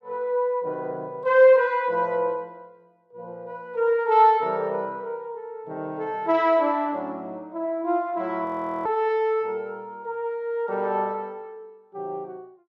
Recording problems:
audio freezing; at 8.5 s

